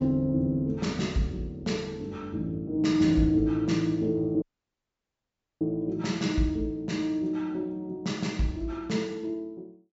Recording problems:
low-pass filter; nothing above 8 kHz
dropout; at 4.5 s for 1 s

